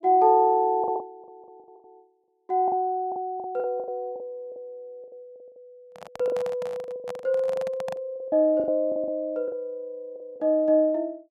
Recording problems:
packet loss; 14% of the sound replaced, filled with the last packet
handling noise; from 6 to 8 s; peak -8 dB vs average level

